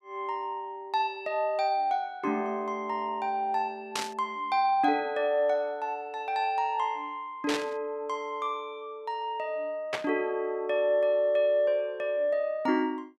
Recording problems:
static burst; at 4 s, at 7.5 s and at 10 s; peak +2 dB vs average level

